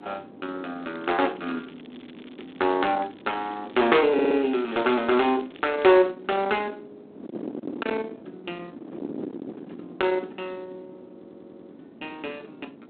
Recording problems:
telephone audio; 240 Hz to 3.9 kHz, G.726
distortion; soft clipping, signal-to-distortion ratio 7 dB
wind on the microphone; below 640 Hz, SNR 16 dB
crackle; from 1 to 6 s; loose cable, SNR 27 dB
stutter; at 4 s and at 11 s

